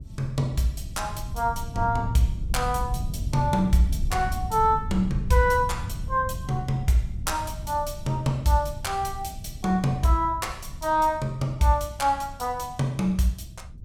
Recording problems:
rumble; below 110 Hz, SNR 9 dB

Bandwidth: 17.5 kHz